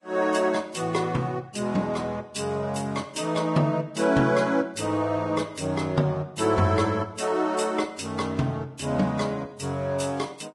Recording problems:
codec artefacts; Vorbis, log-spectral distance 4 dB, nothing above 10.4 kHz

